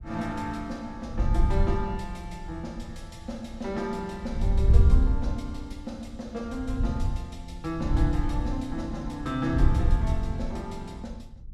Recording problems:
wind on the microphone; below 82 Hz, SNR -6 dB

